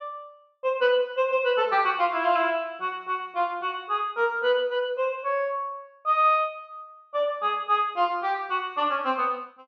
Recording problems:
none

